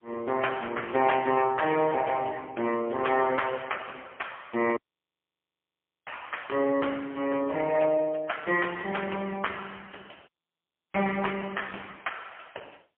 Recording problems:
phone line; 300 Hz to 3.2 kHz, AMR-NB, then MP3
dropout; at 5 s for 1.5 s and at 10 s for 0.5 s

